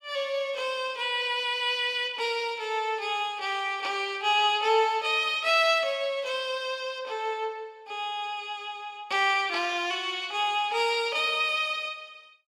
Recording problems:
none

